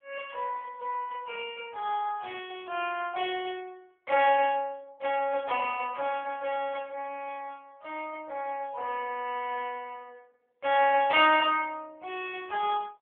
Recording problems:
telephone audio; 320 Hz to 3.4 kHz, AMR-NB

